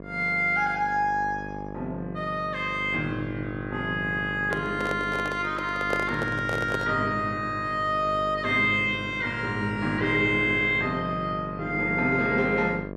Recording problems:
electrical hum; 50 Hz, harmonics up to 1.3 kHz, SNR 12 dB
handling noise; from 4.5 to 7 s; peak 0 dB vs average level

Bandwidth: 12.5 kHz